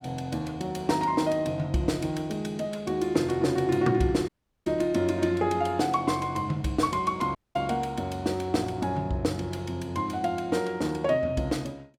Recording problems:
dropout; at 4.5 s and at 7.5 s

